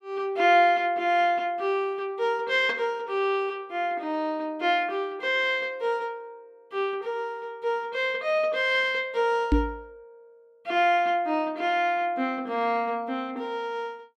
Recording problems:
microphone thump; at 9.5 s; peak +6 dB vs average level

